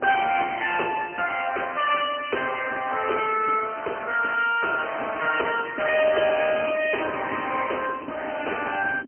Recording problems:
telephone audio; 240 Hz to 3.1 kHz, AMR-NB, then MP3
wind noise; below 430 Hz, SNR 18 dB

